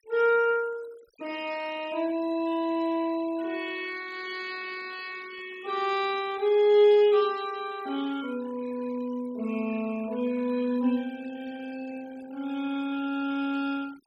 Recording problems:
noise reduction artefacts; signal-to-artefact ratio 21 dB

